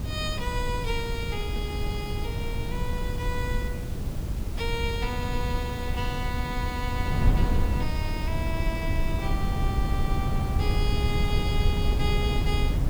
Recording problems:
hiss; slope 0 dB per octave, SNR 13 dB
wind noise; below 120 Hz, SNR -4 dB

